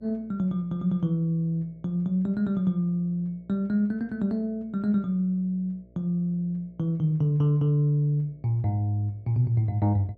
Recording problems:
mains hum; 60 Hz, harmonics up to 660 Hz, SNR 30 dB

